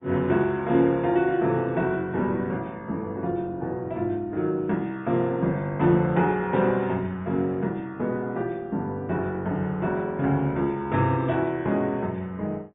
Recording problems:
treble cut off; nothing above 3.7 kHz
codec artefacts; Opus, log-spectral distance 2 dB

